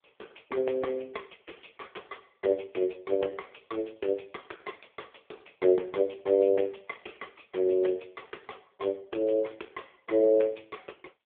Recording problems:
telephone audio; 300 Hz to 3.4 kHz, AMR-NB

